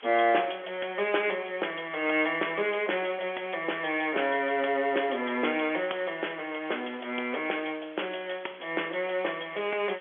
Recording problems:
phone line; 280 Hz to 3.4 kHz, G.711
background hiss; SNR 21 dB

